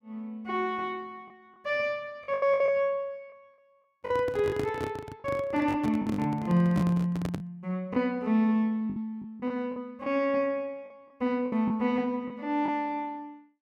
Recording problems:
packet loss; 7% of the sound replaced, filled with the last packet
microphone handling noise; from 4 to 7.5 s; peak -1 dB vs average level

